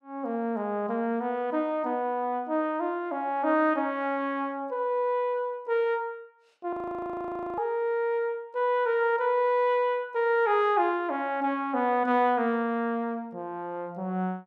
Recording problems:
frozen audio; at 6.5 s for 1 s

